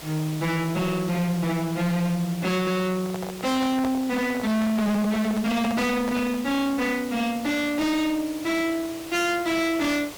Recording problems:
distorted audio; hard clipping, signal-to-distortion ratio 6 dB
background hiss; slope -3 dB per octave, SNR 15 dB
handling noise; from 3 to 6.5 s; peak -1 dB vs average level

